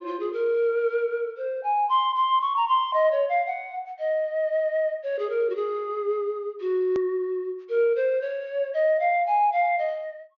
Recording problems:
treble missing; nothing above 6.8 kHz
edit click; at 7 s

